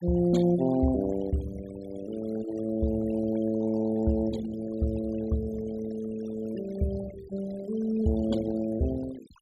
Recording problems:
denoising artefacts; signal-to-artefact ratio 17 dB

